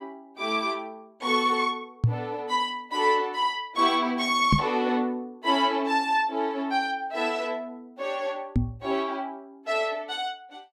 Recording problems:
microphone thump; at 2 s, at 4.5 s and at 8.5 s; peak +8 dB vs average level

